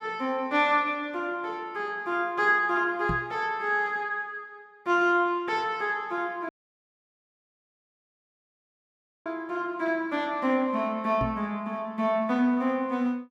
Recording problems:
microphone bump; at 3 s and at 11 s; peak 0 dB vs average level
dropout; at 6.5 s for 3 s

